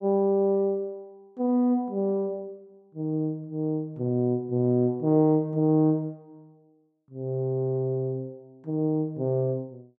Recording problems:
none

